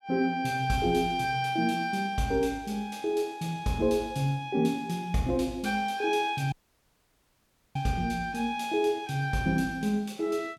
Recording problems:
dropout; at 6.5 s for 1 s

